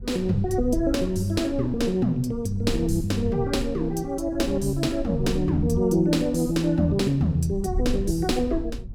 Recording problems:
low-frequency rumble; below 78 Hz, SNR 11 dB

